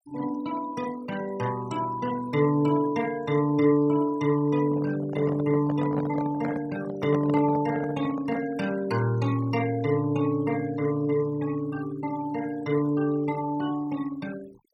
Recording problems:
denoising artefacts; signal-to-artefact ratio 18 dB
microphone handling noise; from 4.5 to 8.5 s; peak -4 dB vs average level

